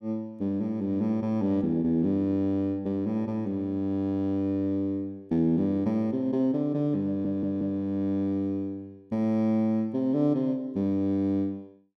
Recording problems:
audio stuttering; at 7 s

